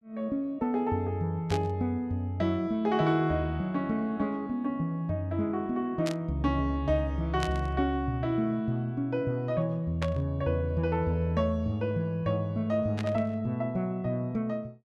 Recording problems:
burst of static; 5 times, first at 1.5 s; peak -3 dB vs average level

